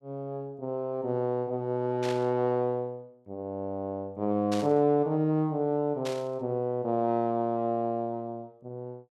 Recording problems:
burst of static; at 2 s, at 4.5 s and at 6 s; peak -5 dB vs average level

